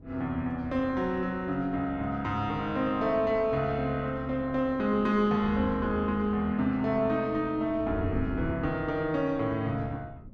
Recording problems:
wind noise; below 210 Hz, SNR 16 dB

